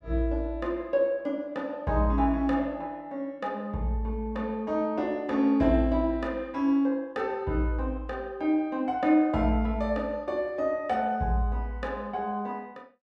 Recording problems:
none

